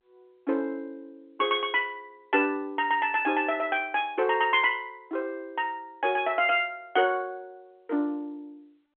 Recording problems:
telephone audio; 240 Hz to 3.4 kHz, G.711

